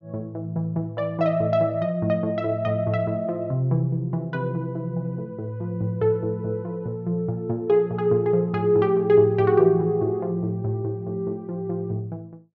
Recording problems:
low-pass filter; nothing above 6.9 kHz

